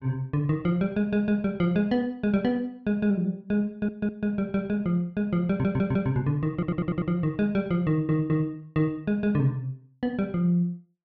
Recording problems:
audio stuttering; 4 times, first at 3.5 s

